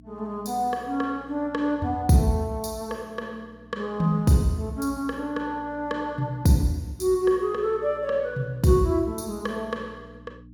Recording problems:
hum; 60 Hz, harmonics up to 300 Hz, SNR 23 dB

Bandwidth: 18 kHz